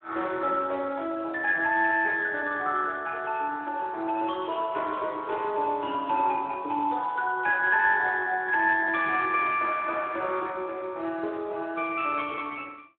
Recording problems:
phone line; 280 Hz to 3.8 kHz, Speex

